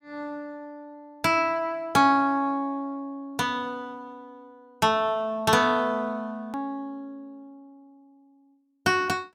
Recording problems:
edit click; at 6.5 s

